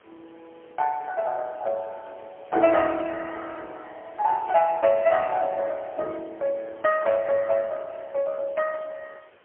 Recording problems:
telephone audio; 390 Hz to 2.6 kHz, AMR-NB, then MP3
hiss; SNR 29 dB

